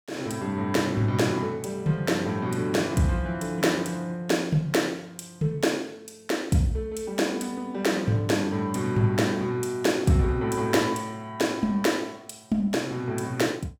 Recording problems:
none

